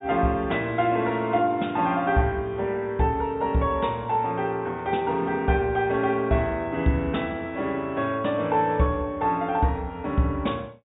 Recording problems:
treble missing; nothing above 4 kHz

